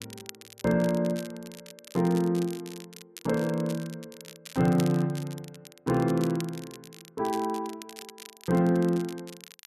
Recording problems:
crackling; vinyl, SNR 18 dB

